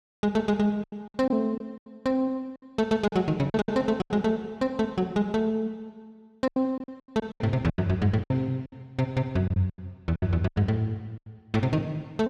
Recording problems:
packet loss; 12% of the sound replaced, filled with silence

